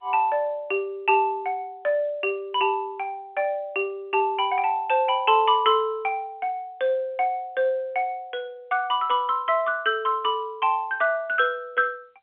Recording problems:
telephone audio; 240 Hz to 3.3 kHz, G.711

